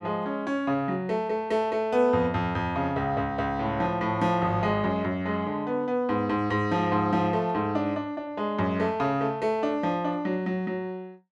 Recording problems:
none

